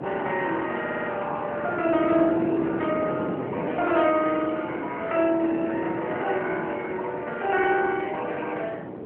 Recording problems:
phone line; 260 Hz to 3.2 kHz, AMR-NB
wind on the microphone; below 530 Hz, SNR 8 dB
stutter; at 1 s

